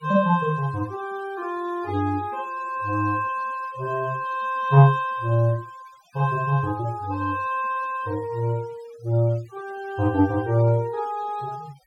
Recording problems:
noise reduction artefacts; signal-to-artefact ratio 24 dB

